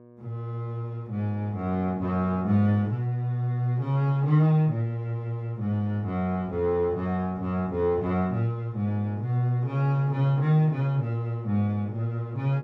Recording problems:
electrical hum; 60 Hz, harmonics up to 1.2 kHz, SNR 21 dB

